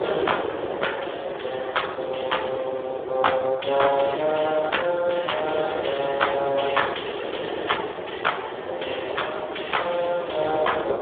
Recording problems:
telephone audio; 300 Hz to 3.6 kHz, Speex
wind noise; below 730 Hz, SNR 5 dB

